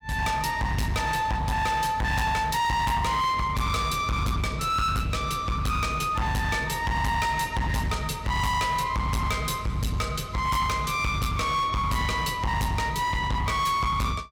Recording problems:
distortion; hard clipping, signal-to-distortion ratio 6 dB

